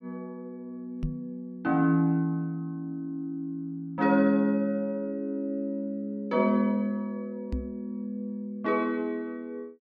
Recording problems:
microphone bump; at 1 s and at 7.5 s; peak +1 dB vs average level

